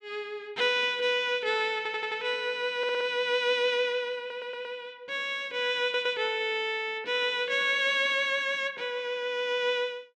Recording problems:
stutter; 4 times, first at 2 s

